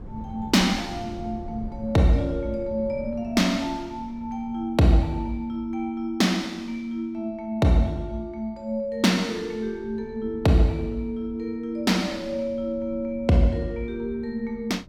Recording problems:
wind on the microphone; below 180 Hz, SNR 18 dB

